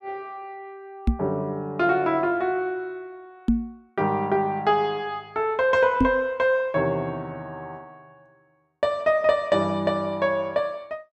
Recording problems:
microphone bump; at 1 s, at 3.5 s and at 6 s; peak +7 dB vs average level

